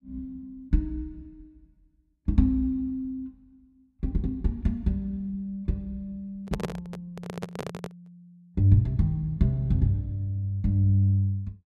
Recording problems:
handling noise; from 6.5 to 8 s; peak +1 dB vs average level

